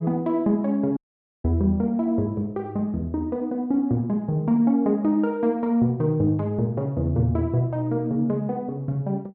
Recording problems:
dropout; at 1 s

